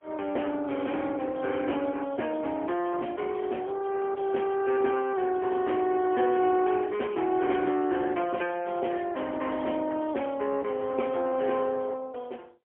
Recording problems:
phone line; 260 Hz to 3.3 kHz, AMR-NB, then MP3

